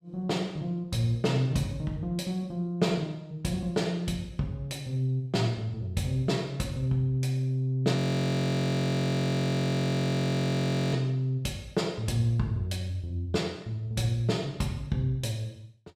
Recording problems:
frozen audio; at 8 s for 3 s

